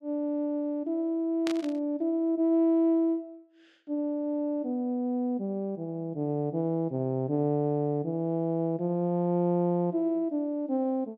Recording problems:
burst of static; at 1.5 s; peak -3 dB vs average level

